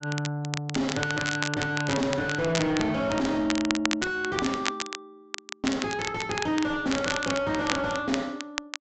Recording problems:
treble missing; nothing above 7.9 kHz
distortion; soft clipping, signal-to-distortion ratio 5 dB
crackling; vinyl, SNR 6 dB

